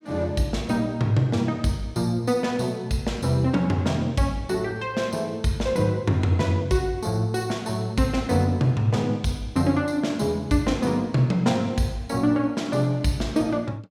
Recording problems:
none

